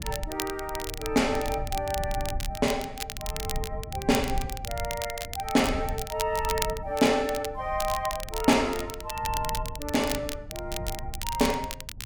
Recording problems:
low-frequency rumble; below 96 Hz, SNR 11 dB
crackling; vinyl, SNR 8 dB

